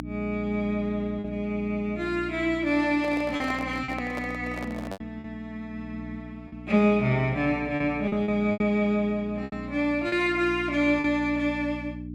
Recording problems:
electrical hum; 60 Hz, harmonics up to 300 Hz, SNR 12 dB
packet loss; 5% of the sound replaced, filled with repeated pitch periods
microphone handling noise; from 3 to 5 s; peak -7 dB vs average level

